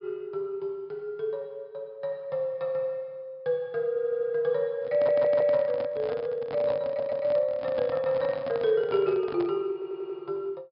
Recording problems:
low-pass filter; nothing above 5.5 kHz
audio stuttering; 4 times, first at 4 s
microphone handling noise; from 5 to 9.5 s; peak -6 dB vs average level

